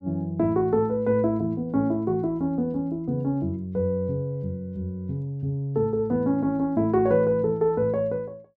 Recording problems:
none

